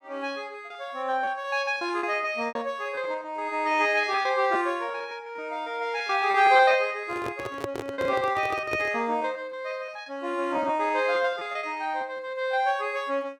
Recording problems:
packet loss; 14% of the sound replaced, filled with repeated pitch periods
handling noise; from 7 to 9 s; peak -2 dB vs average level

